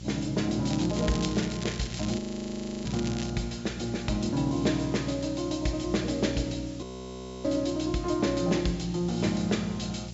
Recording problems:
treble missing; nothing above 8 kHz
hum; 60 Hz, harmonics up to 720 Hz, SNR 10 dB
hiss; SNR 20 dB
crackle; from 0.5 to 3.5 s; loose cable, SNR 12 dB
audio freezing; at 2 s for 0.5 s and at 7 s for 0.5 s

